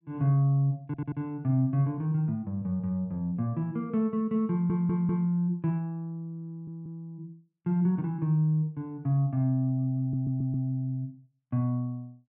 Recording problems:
stutter; 4 times, first at 1 s

